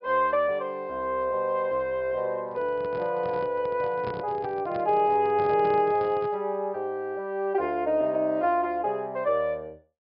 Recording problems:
treble cut off; nothing above 5.5 kHz
handling noise; from 2.5 to 6.5 s; peak -7 dB vs average level

